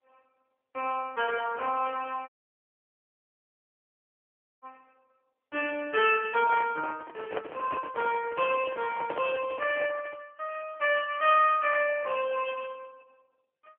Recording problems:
phone line; 300 Hz to 3.2 kHz, AMR-NB
audio cutting out; at 2.5 s for 2.5 s
microphone handling noise; from 6.5 to 10 s; peak -2 dB vs average level

